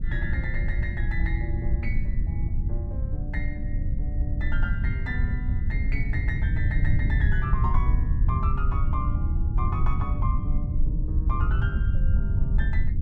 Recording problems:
low-frequency rumble; below 88 Hz, SNR -9 dB

